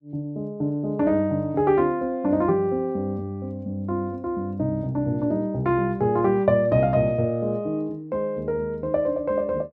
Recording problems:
none

